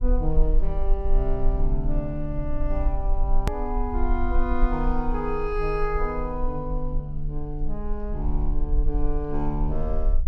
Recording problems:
low-frequency rumble; below 42 Hz, strongest tone 18 Hz, SNR -1 dB
edit click; at 3.5 s

